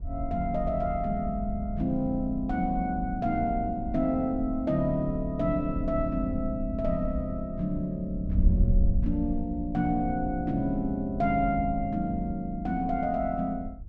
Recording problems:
wind on the microphone; below 70 Hz, SNR 6 dB

